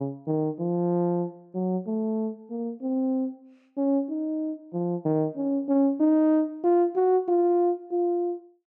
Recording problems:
none

